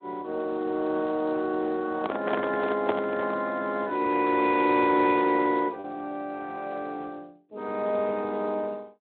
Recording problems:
telephone audio; 220 Hz to 3.9 kHz, Speex
lost packets; 0.5% of the sound replaced, filled with repeated pitch periods
microphone handling noise; from 2 to 3.5 s; peak +2 dB vs average level

